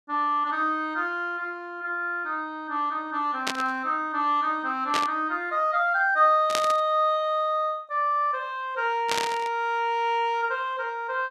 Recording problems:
static burst; 4 times, first at 3.5 s; peak +3 dB vs average level

